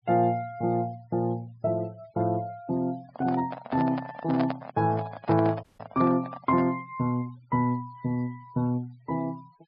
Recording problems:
treble cut off; nothing above 5.5 kHz
noise reduction artefacts; signal-to-artefact ratio 25 dB
handling noise; from 3 to 6.5 s; peak +1 dB vs average level
audio cutting out; at 5.5 s

